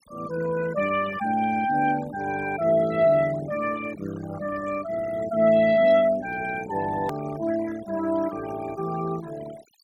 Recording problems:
noise reduction artefacts; signal-to-artefact ratio 16 dB
click at an edit; at 7 s

